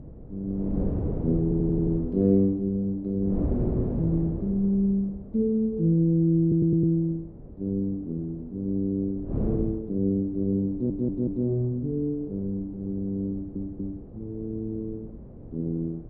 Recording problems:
wind on the microphone; below 290 Hz, SNR 10 dB
stutter; 4 times, first at 1.5 s

